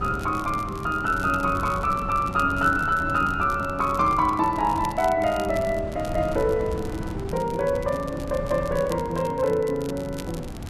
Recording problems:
wind noise; below 260 Hz, SNR 12 dB
crackling; vinyl, SNR 21 dB

